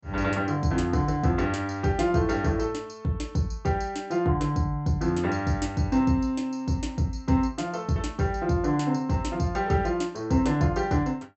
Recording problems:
treble missing; nothing above 8 kHz

